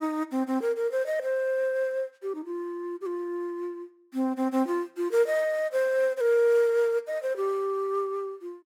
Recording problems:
none

